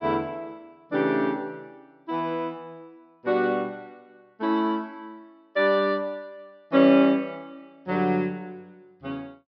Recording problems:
treble cut off; nothing above 5.5 kHz

